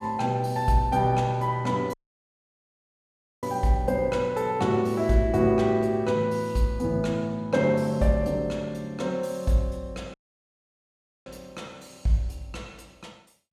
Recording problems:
audio cutting out; at 2 s for 1.5 s and at 10 s for 1 s

